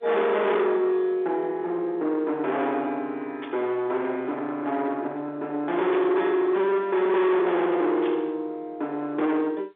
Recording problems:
telephone audio; 280 Hz to 3.5 kHz, G.711
distortion; soft clipping, signal-to-distortion ratio 7 dB
burst of static; at 3.5 s, at 6 s and at 8 s; peak -9 dB vs average level

